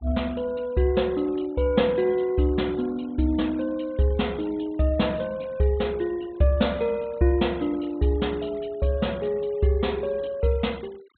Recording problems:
treble cut off; nothing above 4 kHz
noise reduction artefacts; signal-to-artefact ratio 25 dB

